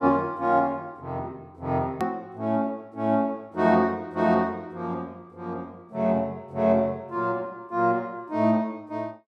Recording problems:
hard cut with a click; at 2 s

